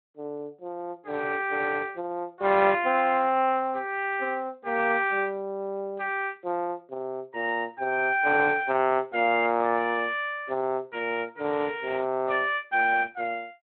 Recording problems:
phone line; 280 Hz to 3.5 kHz, Speex

